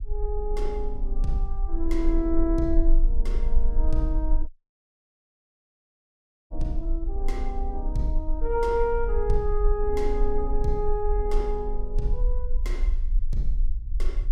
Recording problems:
low-frequency rumble; below 38 Hz, strongest tone 24 Hz, SNR -1 dB
dropout; at 4.5 s for 2 s

